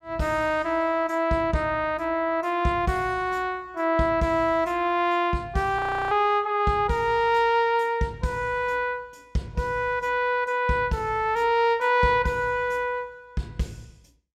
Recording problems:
frozen audio; at 6 s

